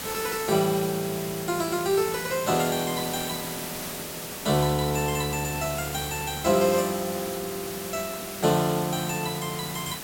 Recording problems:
hiss; slope -2 dB per octave, SNR 7 dB

